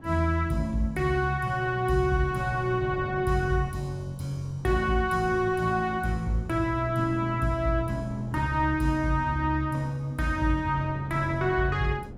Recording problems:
wind on the microphone; below 280 Hz, SNR 17 dB

